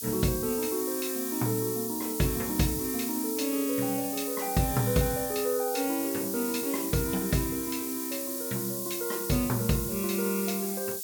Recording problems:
hiss; SNR 3 dB

